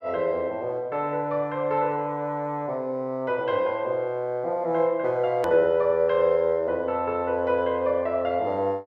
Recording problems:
edit click; at 5.5 s

